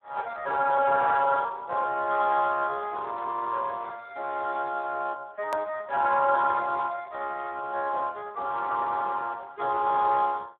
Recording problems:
phone line; 370 Hz to 3.7 kHz, Speex
click at an edit; at 5.5 s

